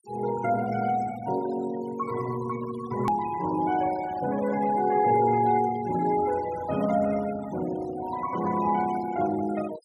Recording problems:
denoising artefacts; signal-to-artefact ratio 16 dB
hard cut with a click; at 3 s

